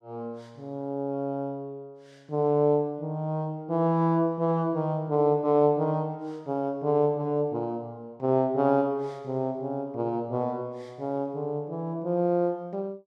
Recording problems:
none

